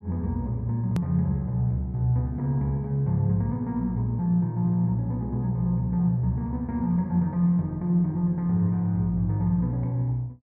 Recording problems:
click at an edit; at 1 s

